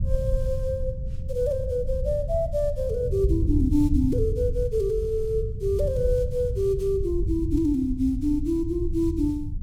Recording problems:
low-frequency rumble; below 98 Hz, SNR 4 dB

